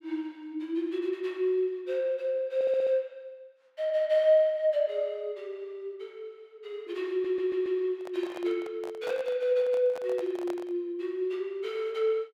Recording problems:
audio stuttering; at 2.5 s and at 7 s
handling noise; from 8 to 11 s; peak -7 dB vs average level

